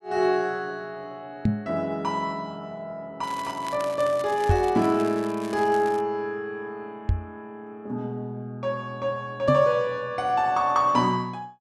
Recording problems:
microphone bump; 4 times, first at 1.5 s; peak +7 dB vs average level
crackle; from 3 to 6 s; loose cable, SNR 18 dB

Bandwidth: 12 kHz